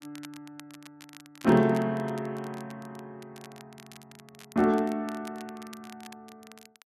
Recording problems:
crackle; vinyl, SNR 23 dB

